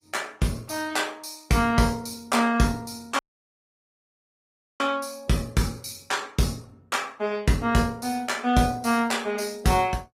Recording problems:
lossy compression; Opus, log-spectral distance 4 dB, nothing above 15.5 kHz
dropout; at 3 s for 1.5 s

